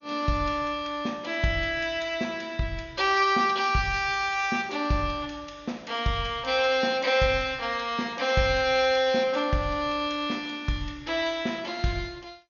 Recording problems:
codec artefacts; MP2, log-spectral distance 2 dB, nothing above 5.8 kHz

